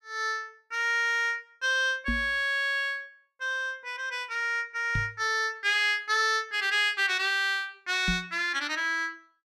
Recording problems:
knock on the microphone; at 2 s, at 5 s and at 8 s; peak 0 dB vs average level

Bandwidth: 14.5 kHz